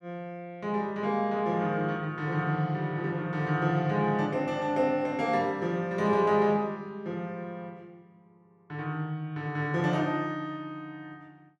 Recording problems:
none

